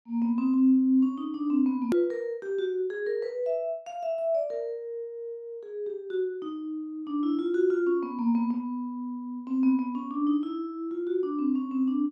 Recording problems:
click at an edit; at 2 s

